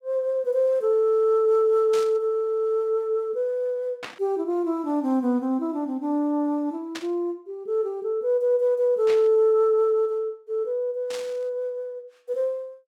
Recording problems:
static burst; 5 times, first at 2 s; peak -6 dB vs average level

